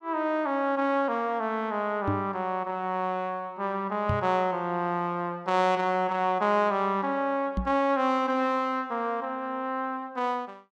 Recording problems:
microphone thump; at 2 s, at 4 s and at 7.5 s; peak +1 dB vs average level

